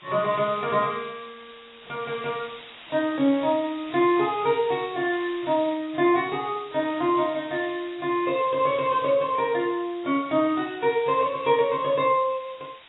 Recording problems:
lossy compression; AAC, log-spectral distance 15 dB, nothing above 3.8 kHz
background hiss; SNR 20 dB

